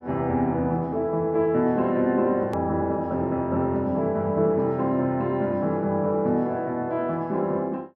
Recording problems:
hard cut with a click; at 2.5 s

